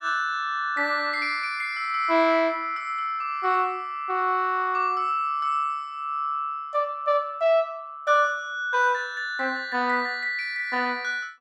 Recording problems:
none

